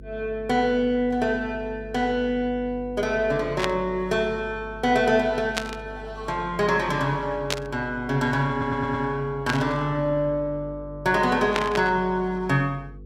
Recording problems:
hum; 50 Hz, harmonics up to 500 Hz, SNR 18 dB
burst of static; 5 times, first at 3.5 s; peak +3 dB vs average level
audio stuttering; at 8.5 s

